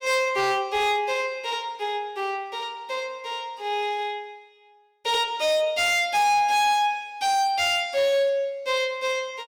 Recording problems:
distorted audio; hard clipping, signal-to-distortion ratio 12 dB

